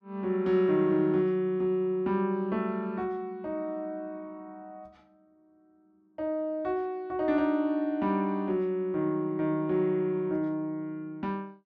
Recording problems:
none

